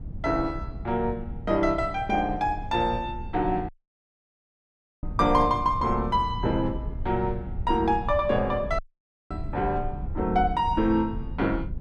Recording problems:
low-frequency rumble; below 100 Hz, SNR 10 dB
audio cutting out; at 3.5 s for 1.5 s and at 9 s for 0.5 s

